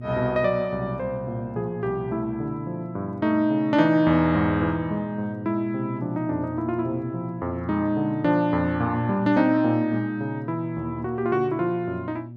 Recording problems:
electrical hum; 60 Hz, harmonics up to 600 Hz, SNR 13 dB

